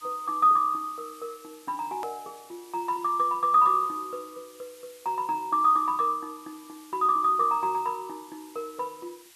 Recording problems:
background hiss; slope +3 dB per octave, SNR 25 dB
edit click; at 2 s

